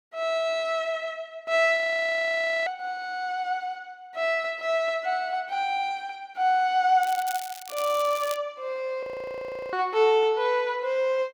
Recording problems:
frozen audio; at 2 s for 1 s and at 9 s for 0.5 s
crackling; from 7 to 8.5 s; loose cable, SNR 14 dB

